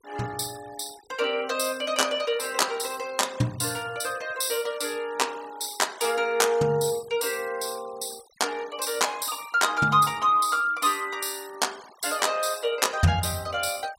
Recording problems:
noise reduction artefacts; signal-to-artefact ratio 21 dB

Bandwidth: 16 kHz